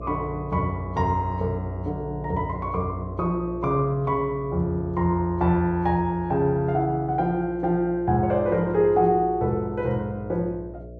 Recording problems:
hum; 60 Hz, harmonics up to 660 Hz, SNR 15 dB

